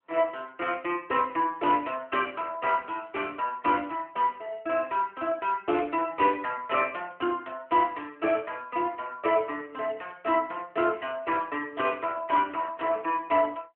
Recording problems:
phone line; 220 Hz to 3.2 kHz, AMR-NB

